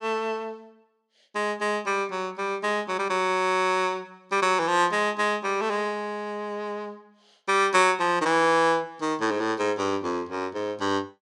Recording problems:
none

